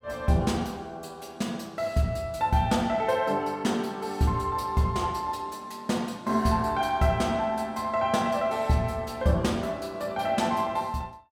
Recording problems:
none

